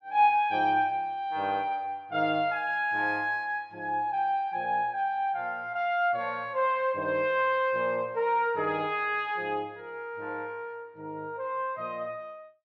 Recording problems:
none

